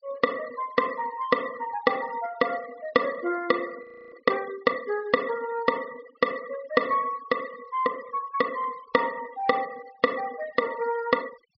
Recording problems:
treble cut off; nothing above 5.5 kHz
noise reduction artefacts; signal-to-artefact ratio 18 dB
frozen audio; at 4 s

